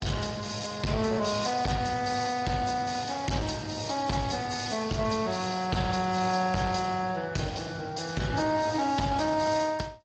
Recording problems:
lossy compression; Speex, then AAC, log-spectral distance 8 dB
distortion; hard clipping, uneven, signal-to-distortion ratio 11 dB

